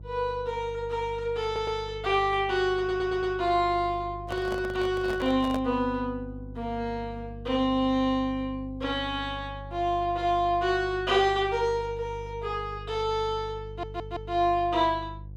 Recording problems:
electrical hum; 50 Hz, harmonics up to 350 Hz, SNR 15 dB
audio stuttering; at 1.5 s, at 3 s and at 14 s
microphone handling noise; from 4.5 to 5.5 s; peak -3 dB vs average level

